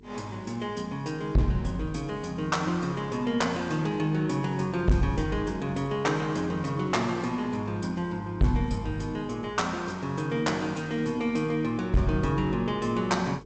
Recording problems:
lossy compression; G.722, log-spectral distance 2 dB, nothing above 8 kHz
distortion; hard clipping, uneven, signal-to-distortion ratio 10 dB
hum; 50 Hz, harmonics up to 450 Hz, SNR 23 dB

